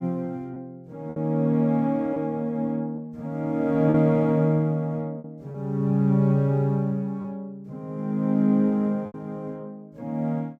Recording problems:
lost packets; 3% of the sound replaced, filled with repeated pitch periods

